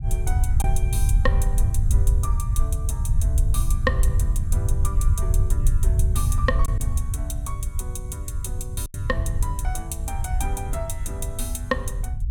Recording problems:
rumble; below 82 Hz, SNR -7 dB
lost packets; 1.1% of the sound replaced, filled with silence

